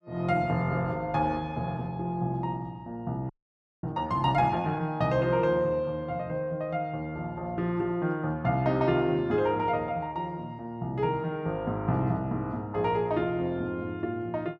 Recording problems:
frozen audio; at 3.5 s for 0.5 s

